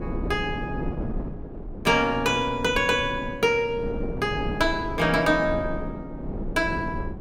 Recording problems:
wind on the microphone; below 310 Hz, SNR 9 dB

